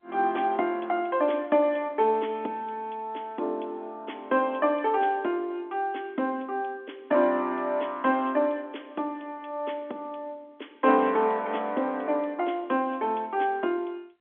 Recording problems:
telephone audio; 220 Hz to 3.5 kHz, G.711

